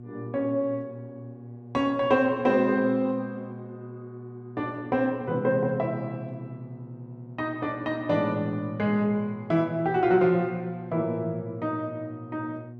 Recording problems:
hum; 60 Hz, harmonics up to 720 Hz, SNR 16 dB

